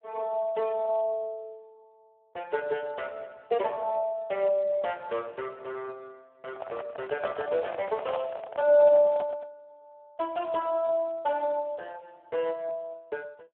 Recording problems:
phone line; 320 Hz to 2.8 kHz, Speex
microphone handling noise; from 6.5 to 9.5 s; peak -3 dB vs average level

